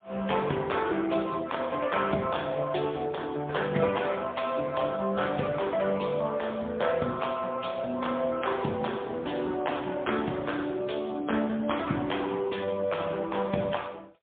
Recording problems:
phone line; 170 Hz to 3.6 kHz, AMR-NB, then MP3

